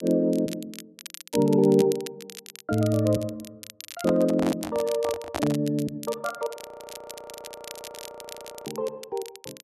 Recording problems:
crackling; vinyl, SNR 16 dB
handling noise; from 4 to 5.5 s; peak 0 dB vs average level
frozen audio; at 6.5 s for 2 s

